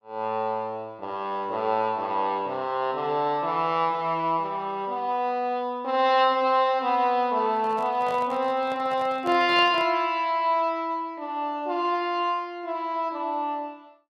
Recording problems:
handling noise; from 7.5 to 10 s; peak -8 dB vs average level

